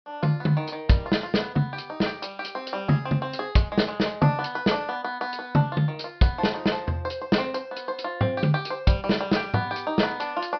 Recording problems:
low-pass filter; nothing above 5.5 kHz

